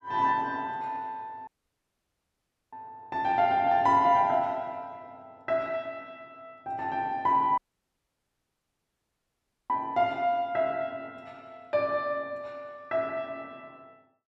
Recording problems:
audio cutting out; at 1.5 s for 1.5 s and at 7.5 s for 2 s

